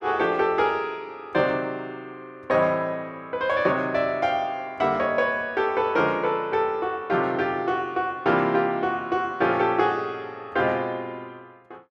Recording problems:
none

